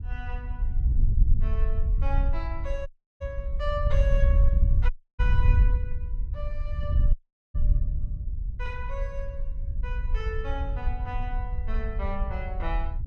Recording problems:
wind on the microphone; below 66 Hz, SNR -9 dB
audio cutting out; at 3 s, at 5 s and at 7 s

